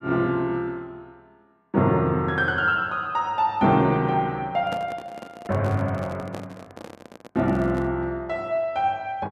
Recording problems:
microphone handling noise; from 4.5 to 8 s; peak -6 dB vs average level

